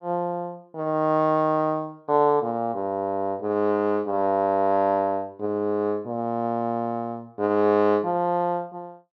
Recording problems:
none

